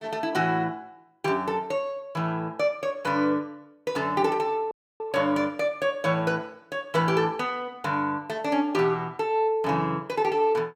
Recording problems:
audio cutting out; at 4.5 s

